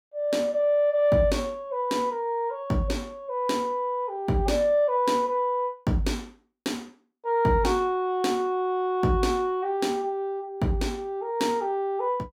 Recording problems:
none

